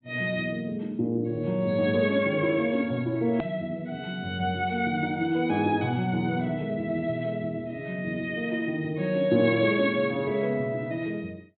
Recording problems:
treble missing; nothing above 4 kHz
hard cut with a click; at 3.5 s

